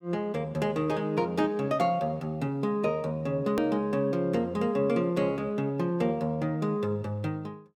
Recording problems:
click at an edit; at 3.5 s

